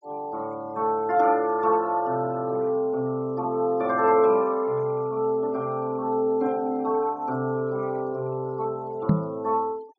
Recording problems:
low-pass filter; nothing above 8 kHz
noise reduction artefacts; signal-to-artefact ratio 28 dB
microphone bump; at 9 s; peak +7 dB vs average level

